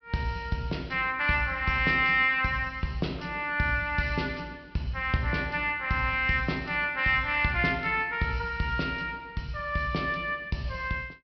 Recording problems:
treble cut off; nothing above 5.5 kHz

